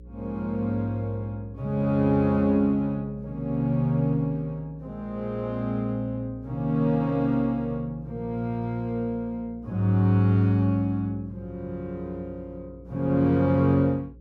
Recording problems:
hum; 60 Hz, harmonics up to 540 Hz, SNR 21 dB

